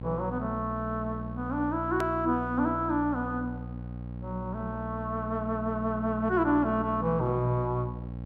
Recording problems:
mains hum; 60 Hz, harmonics up to 840 Hz, SNR 9 dB
hard cut with a click; at 2 s

